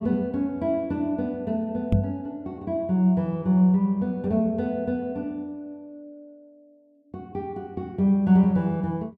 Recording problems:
microphone bump; at 2 s; peak +6 dB vs average level

